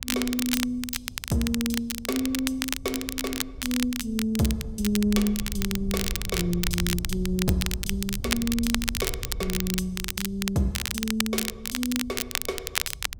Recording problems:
wind on the microphone; below 92 Hz, SNR 10 dB
crackling; vinyl, SNR 2 dB

